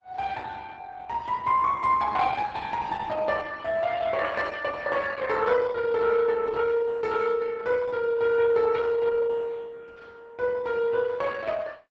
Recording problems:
lossy compression; Opus, log-spectral distance 3 dB, nothing above 8 kHz

